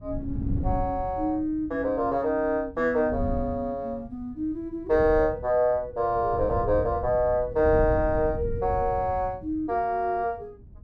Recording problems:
wind noise; below 120 Hz, SNR 9 dB

